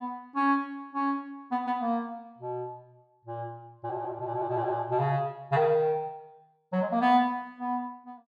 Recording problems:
none

